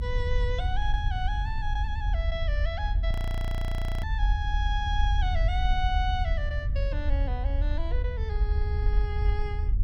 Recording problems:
low-frequency rumble; below 74 Hz, SNR -6 dB
audio freezing; at 3 s for 1 s

